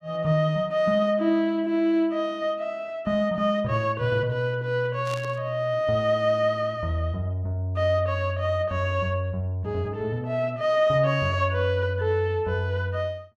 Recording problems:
static burst; at 5 s; peak -10 dB vs average level

